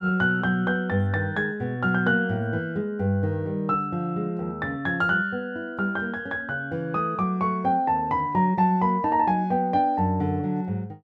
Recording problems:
none

